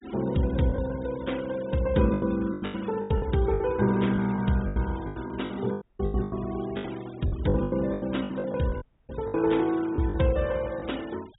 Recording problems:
treble cut off; nothing above 4 kHz
denoising artefacts; signal-to-artefact ratio 21 dB
packet loss; 14% of the sound replaced, filled with the last packet
audio cutting out; at 6 s and at 9 s

